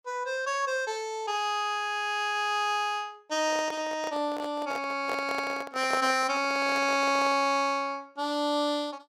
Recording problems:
microphone handling noise; from 3.5 to 7.5 s; peak 0 dB vs average level

